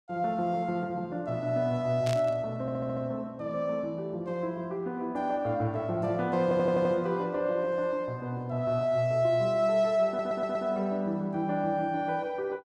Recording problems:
static burst; at 2 s; peak -6 dB vs average level
stutter; at 2.5 s, at 6.5 s and at 10 s

